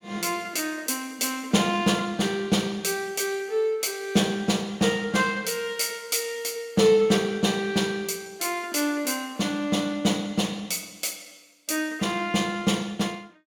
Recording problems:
none

